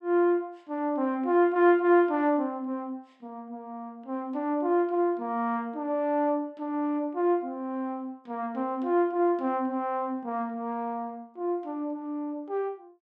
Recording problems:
none

